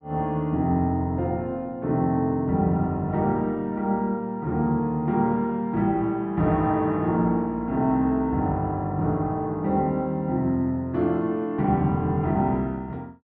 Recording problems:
none

